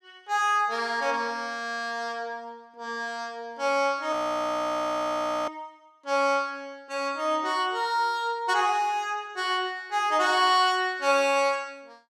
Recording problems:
audio freezing; at 4 s for 1.5 s

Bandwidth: 15 kHz